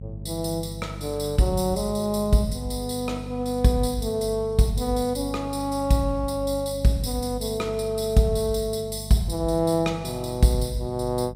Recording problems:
hum; 50 Hz, harmonics up to 400 Hz, SNR 13 dB

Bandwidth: 15.5 kHz